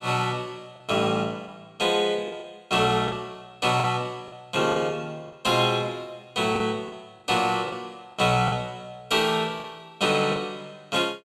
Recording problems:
packet loss; 6% of the sound replaced, filled with the last packet

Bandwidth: 14.5 kHz